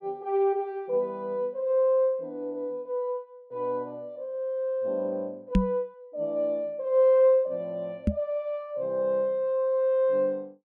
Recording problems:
microphone bump; at 5.5 s and at 8 s; peak +8 dB vs average level

